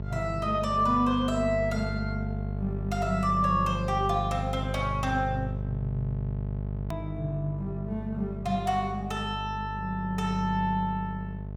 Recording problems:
hum; 50 Hz, harmonics up to 650 Hz, SNR 5 dB
hard cut with a click; at 7 s

